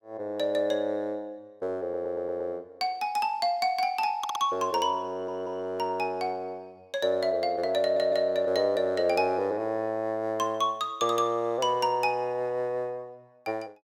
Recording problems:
stutter; 4 times, first at 2 s

